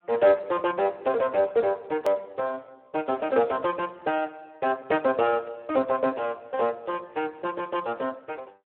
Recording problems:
telephone audio; 300 Hz to 3.4 kHz, Speex
hard cut with a click; at 2 s

